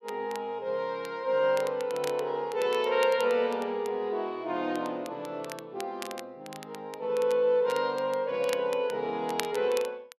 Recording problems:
crackle; vinyl, SNR 16 dB

